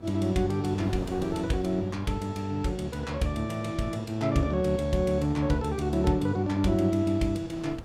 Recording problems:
mains hum; 60 Hz, harmonics up to 1.4 kHz, SNR 21 dB
wind on the microphone; below 520 Hz, SNR 20 dB

